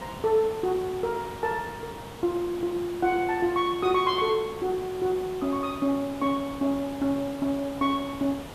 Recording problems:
hiss; slope -5 dB per octave, SNR 14 dB

